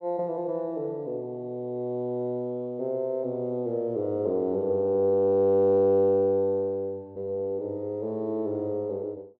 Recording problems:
none

